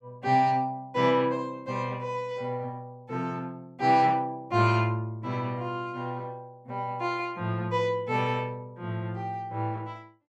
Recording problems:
none

